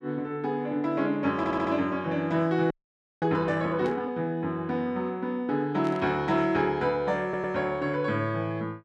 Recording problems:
audio stuttering; at 1.5 s and at 7 s
audio freezing; at 2.5 s for 0.5 s
burst of static; at 4 s and at 6 s; peak -14 dB vs average level

